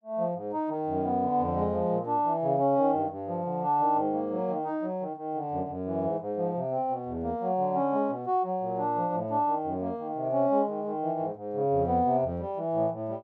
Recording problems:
none

